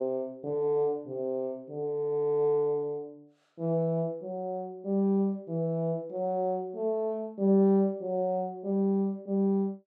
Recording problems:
none

